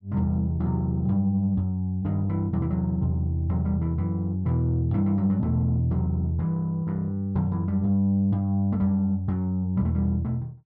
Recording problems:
none

